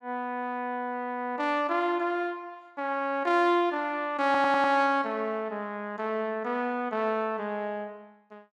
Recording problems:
audio stuttering; at 4.5 s

